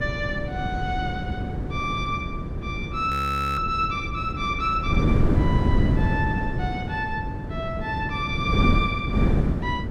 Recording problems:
hum; 50 Hz, harmonics up to 350 Hz, SNR 16 dB
wind on the microphone; below 230 Hz, SNR -1 dB
audio freezing; at 3 s

